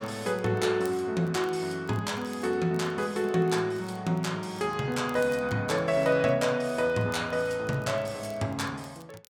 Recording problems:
crackle; vinyl, SNR 28 dB

